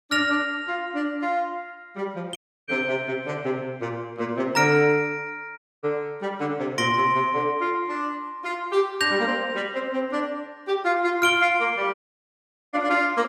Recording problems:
audio cutting out; at 2.5 s, at 5.5 s and at 12 s for 1 s

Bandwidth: 15.5 kHz